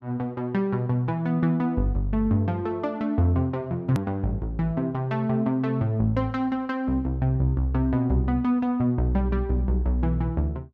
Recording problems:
click at an edit; at 4 s

